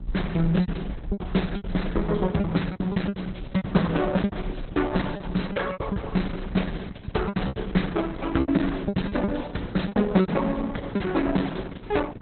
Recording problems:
lossy codec; Opus, log-spectral distance 2 dB, nothing above 4.1 kHz
hum; 60 Hz, harmonics up to 780 Hz, SNR 19 dB
low-frequency rumble; below 200 Hz, SNR 10 dB
lost packets; 12% of the sound replaced, filled with repeated pitch periods

